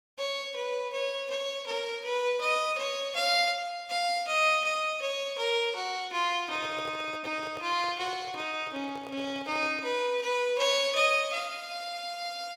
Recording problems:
microphone handling noise; from 6.5 to 10 s; peak -9 dB vs average level

